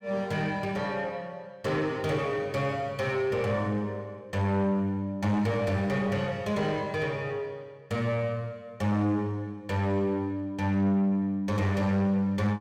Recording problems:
distorted audio; soft clipping, signal-to-distortion ratio 10 dB

